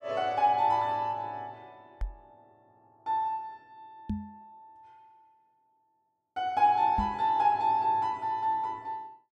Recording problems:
knock on the microphone; at 2 s, at 4 s and at 7 s; peak -1 dB vs average level

